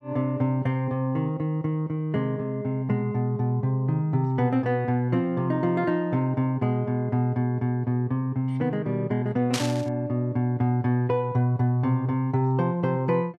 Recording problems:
burst of static; at 9.5 s; peak +1 dB vs average level

